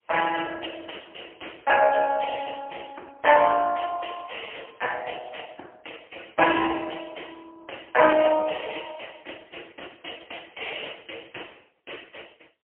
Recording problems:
phone line; 240 Hz to 2.9 kHz, AMR-NB, then MP3

